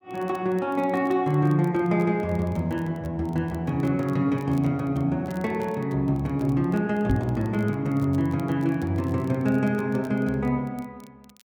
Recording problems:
crackling; vinyl, SNR 30 dB
microphone bump; at 7 s; peak +5 dB vs average level

